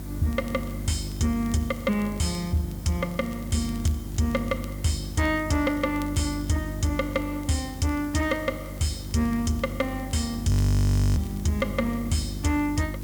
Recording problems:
distortion; soft clipping, signal-to-distortion ratio 12 dB
hum; 50 Hz, harmonics up to 350 Hz, SNR 8 dB
background hiss; SNR 18 dB
crackle; vinyl, SNR 27 dB
audio freezing; at 11 s for 0.5 s

